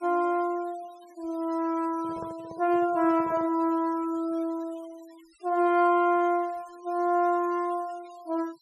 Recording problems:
denoising artefacts; signal-to-artefact ratio 27 dB
handling noise; from 2 to 3.5 s; peak -11 dB vs average level

